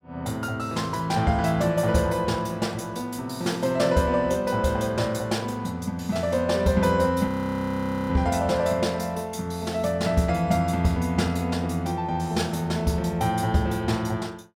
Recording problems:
frozen audio; at 7.5 s for 1 s

